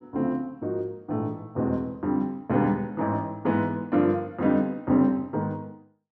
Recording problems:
none

